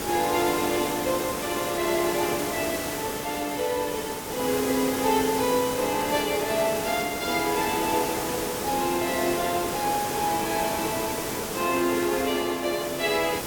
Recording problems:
hiss; SNR 4 dB

